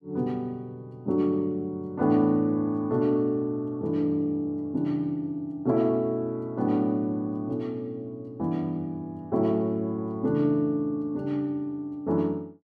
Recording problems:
none

